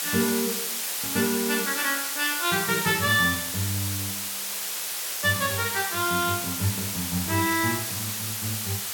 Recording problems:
background hiss; slope +2 dB per octave, SNR 1 dB

